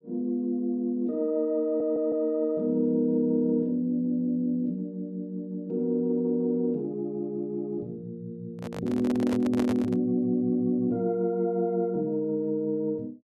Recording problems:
audio stuttering; at 1.5 s
microphone handling noise; from 8.5 to 10 s; peak -2 dB vs average level

